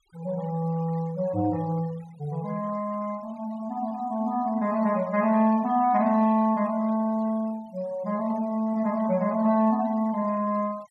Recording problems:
denoising artefacts; signal-to-artefact ratio 24 dB

